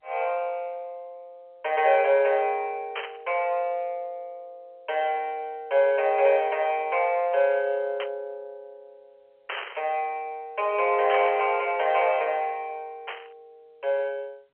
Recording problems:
phone line; 370 Hz to 3.2 kHz, G.711
burst of static; 5 times, first at 3 s; peak -3 dB vs average level

